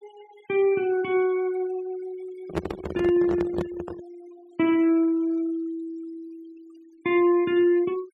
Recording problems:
denoising artefacts; signal-to-artefact ratio 24 dB
handling noise; from 2.5 to 4 s; peak +1 dB vs average level

